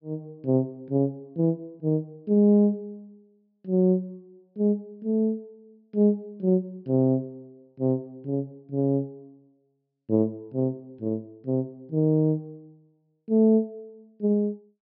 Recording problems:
treble missing; nothing above 5.5 kHz

